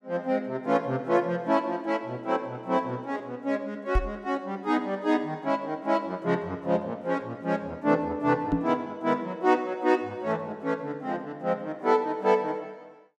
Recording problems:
microphone thump; at 4 s and at 8.5 s; peak +5 dB vs average level

